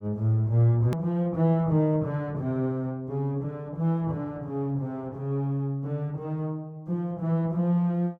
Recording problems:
click at an edit; at 1 s

